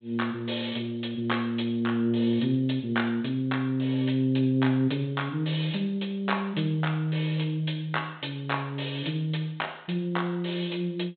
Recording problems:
treble missing; nothing above 4 kHz

